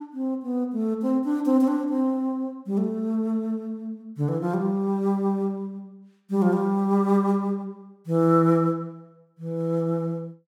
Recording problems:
none

